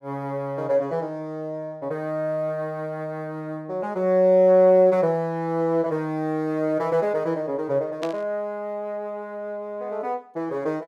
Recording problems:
static burst; at 8 s; peak -7 dB vs average level

